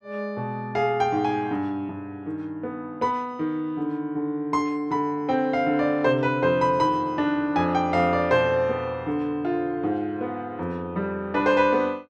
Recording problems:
none

